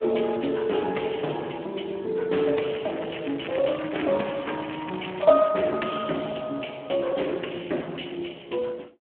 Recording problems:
telephone audio; 190 Hz to 3.3 kHz, Speex
crackling; from 2.5 to 5.5 s; loose cable, SNR 13 dB

